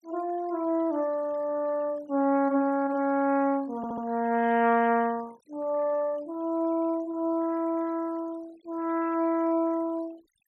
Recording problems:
noise reduction artefacts; signal-to-artefact ratio 26 dB
stutter; at 4 s

